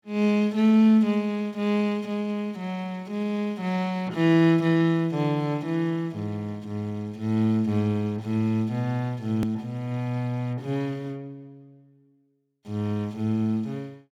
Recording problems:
edit click; at 9.5 s

